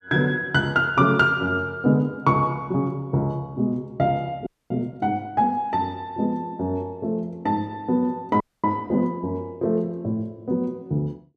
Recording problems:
frozen audio; at 4.5 s and at 8.5 s

